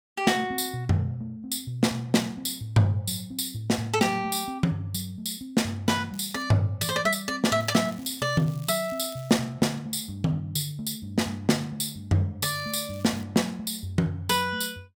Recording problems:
crackling; 4 times, first at 6 s; loose cable, SNR 24 dB

